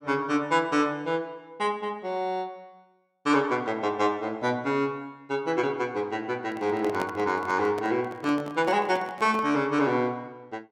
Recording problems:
microphone handling noise; from 6.5 to 9.5 s; peak -2 dB vs average level

